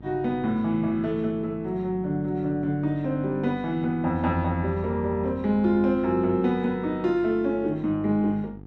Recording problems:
electrical hum; 50 Hz, harmonics up to 900 Hz, SNR 19 dB

